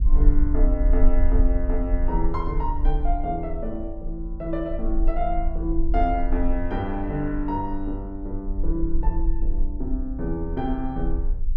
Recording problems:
low-frequency rumble; below 42 Hz, strongest tone 20 Hz, SNR -1 dB

